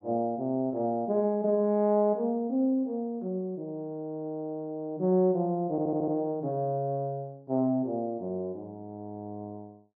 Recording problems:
audio stuttering; at 5.5 s

